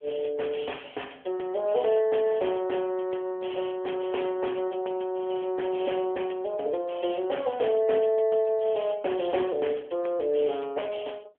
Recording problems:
telephone audio; 300 Hz to 3.3 kHz, AMR-NB

